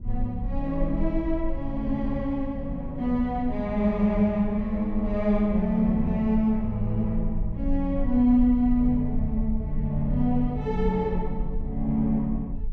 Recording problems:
rumble; below 52 Hz, strongest tone 20 Hz, SNR 9 dB

